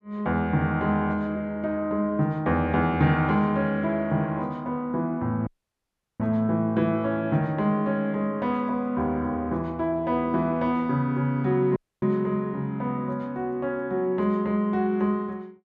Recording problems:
audio cutting out; at 5.5 s for 0.5 s and at 12 s

